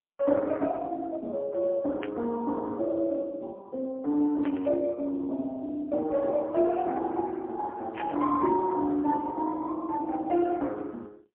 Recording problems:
telephone audio; 240 Hz to 3.6 kHz, AMR-NB, then MP3
burst of static; at 2 s, at 4.5 s and at 8 s; peak -5 dB vs average level

